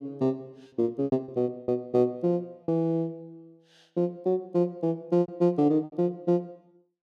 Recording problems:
packet loss; 8% of the sound replaced, filled with repeated pitch periods

